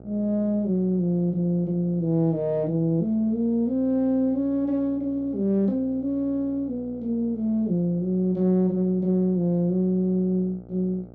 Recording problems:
hum; 60 Hz, harmonics up to 900 Hz, SNR 21 dB

